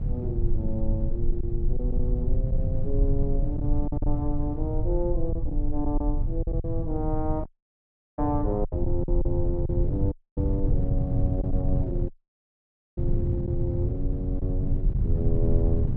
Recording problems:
rumble; below 40 Hz, strongest tone 20 Hz, SNR 1 dB
wind on the microphone; below 140 Hz, SNR -2 dB
packet loss; 5% of the sound replaced, filled with silence
dropout; at 7.5 s for 0.5 s, at 10 s and at 12 s for 1 s

